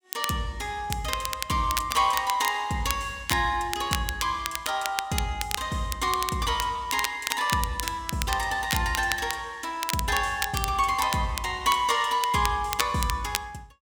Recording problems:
crackle; vinyl, SNR 7 dB

